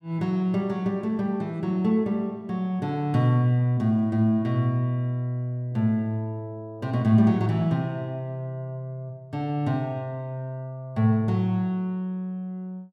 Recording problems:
none

